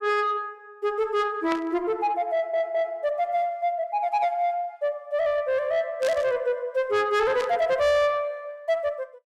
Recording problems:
distorted audio; soft clipping, signal-to-distortion ratio 11 dB
burst of static; at 1.5 s, at 6 s and at 7.5 s; peak -5 dB vs average level
stutter; at 2.5 s

